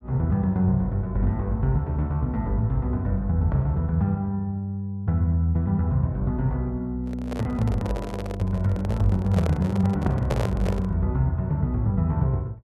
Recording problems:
handling noise; from 7 to 11 s; peak 0 dB vs average level

